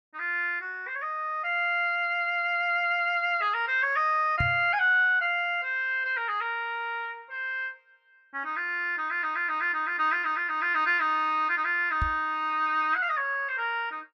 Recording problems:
knock on the microphone; at 4.5 s and at 12 s; peak 0 dB vs average level

